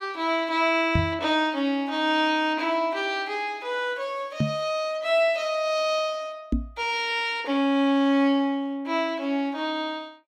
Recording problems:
microphone bump; at 1 s, at 4.5 s and at 6.5 s; peak +4 dB vs average level

